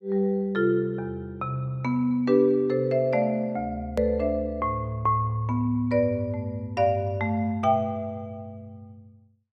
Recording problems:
edit click; at 4 s

